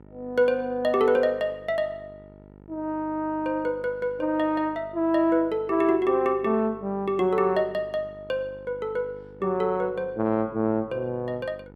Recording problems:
hum; 50 Hz, harmonics up to 1.4 kHz, SNR 23 dB

